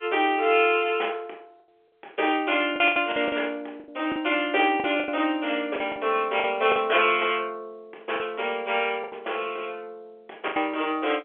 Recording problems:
phone line; 340 Hz to 3.5 kHz, G.711
lost packets; 7% of the sound replaced, filled with the last packet

